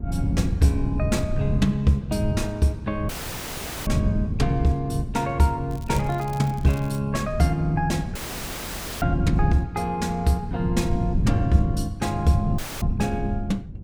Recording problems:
wind on the microphone; below 150 Hz, SNR 4 dB
dropout; at 3 s for 1 s, at 8 s for 1 s and at 13 s; filled with static
crackling; from 5.5 to 7 s; loose cable, SNR 22 dB

